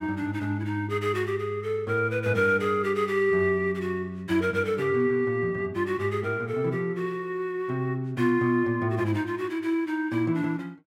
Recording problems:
none

